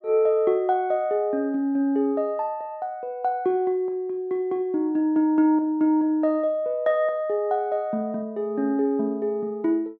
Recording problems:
none

